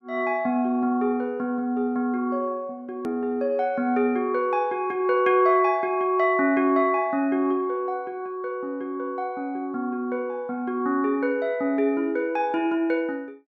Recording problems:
hard cut with a click; at 3 s

